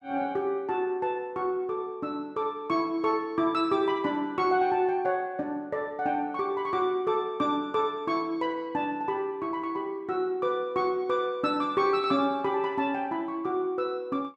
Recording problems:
none

